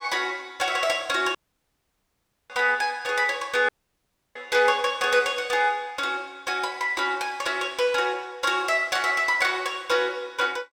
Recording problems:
dropout; at 1.5 s for 1 s and at 3.5 s for 0.5 s

